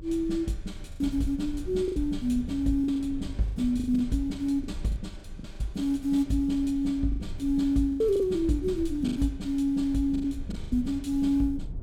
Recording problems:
low-frequency rumble; below 78 Hz, strongest tone 24 Hz, SNR 14 dB
packet loss; 9% of the sound replaced, filled with the last packet

